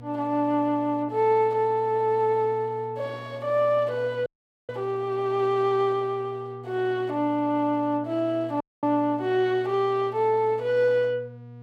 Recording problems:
hum; 60 Hz, harmonics up to 960 Hz, SNR 18 dB
audio cutting out; at 4.5 s and at 8.5 s

